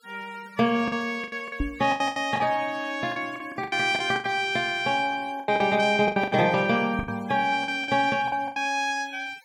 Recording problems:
denoising artefacts; signal-to-artefact ratio 24 dB
packet loss; 13% of the sound replaced, filled with the last packet
knock on the microphone; at 1.5 s and at 7 s; peak 0 dB vs average level

